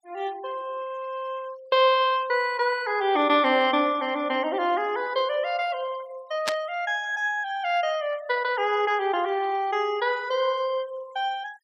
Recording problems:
noise reduction artefacts; signal-to-artefact ratio 24 dB
burst of static; at 6.5 s; peak +2 dB vs average level

